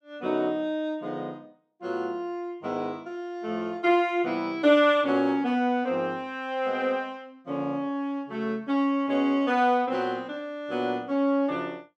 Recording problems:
none

